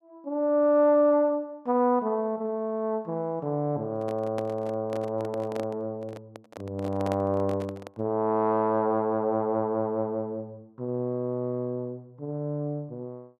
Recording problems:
handling noise; from 4 to 8 s; peak -4 dB vs average level

